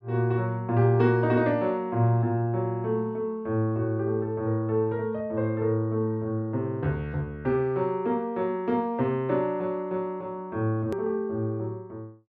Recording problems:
click at an edit; at 11 s

